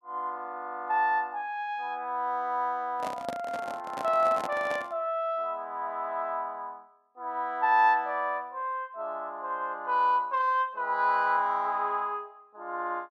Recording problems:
handling noise; from 3 to 5 s; peak -2 dB vs average level

